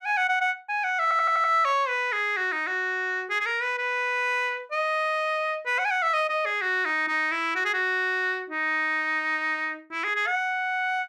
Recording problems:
stutter; at 1 s

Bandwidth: 14 kHz